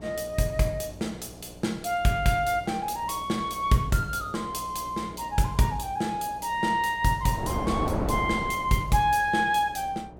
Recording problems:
hum; 60 Hz, harmonics up to 720 Hz, SNR 21 dB
wind noise; below 650 Hz, SNR 5 dB

